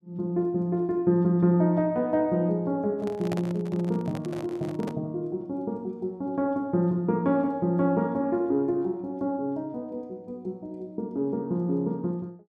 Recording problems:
handling noise; from 3 to 5 s; peak -2 dB vs average level

